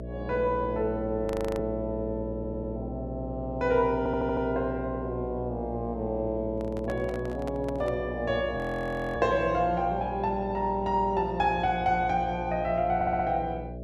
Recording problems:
hum; 60 Hz, harmonics up to 660 Hz, SNR 9 dB
audio freezing; at 1.5 s and at 8.5 s for 0.5 s
audio stuttering; at 2.5 s, at 4 s and at 13 s
handling noise; from 6.5 to 8 s; peak -7 dB vs average level

